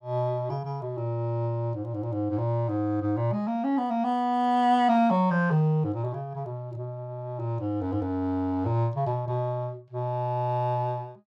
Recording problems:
none

